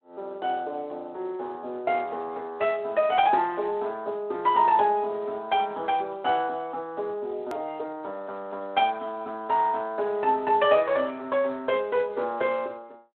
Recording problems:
telephone audio; 300 Hz to 3.6 kHz, Speex
click at an edit; at 7.5 s

